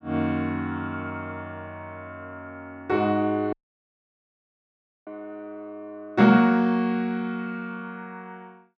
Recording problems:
dropout; at 3.5 s for 1.5 s

